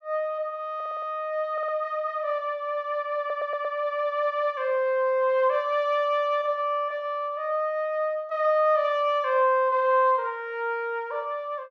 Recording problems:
audio stuttering; at 1 s, at 1.5 s and at 3 s

